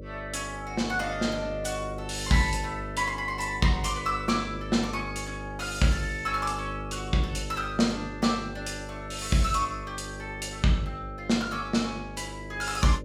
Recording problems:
mains hum; 50 Hz, harmonics up to 600 Hz, SNR 10 dB

